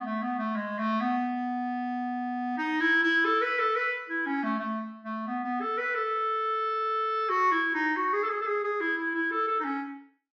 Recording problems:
none

